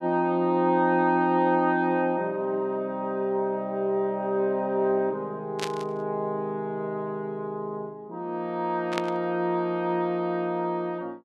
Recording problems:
static burst; at 5.5 s and at 9 s; peak 0 dB vs average level

